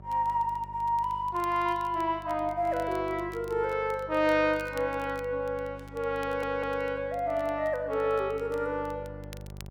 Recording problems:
hum; 50 Hz, harmonics up to 1 kHz, SNR 17 dB
crackle; vinyl, SNR 26 dB
audio stuttering; at 6 s

